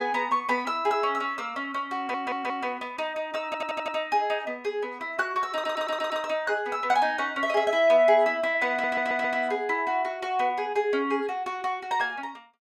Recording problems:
audio stuttering; 4 times, first at 2 s

